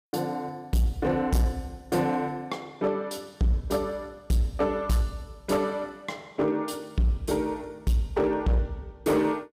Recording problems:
distorted audio; hard clipping, signal-to-distortion ratio 12 dB

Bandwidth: 15.5 kHz